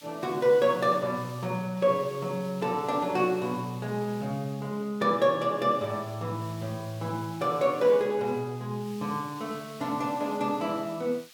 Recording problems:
hiss; SNR 22 dB

